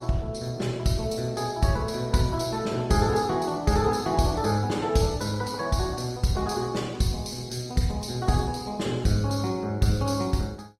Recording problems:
lossy codec; Opus, log-spectral distance 4 dB, nothing above 18.3 kHz

